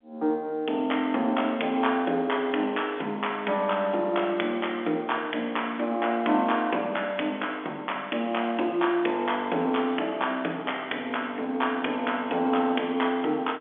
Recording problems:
phone line; 240 Hz to 3.5 kHz, G.711

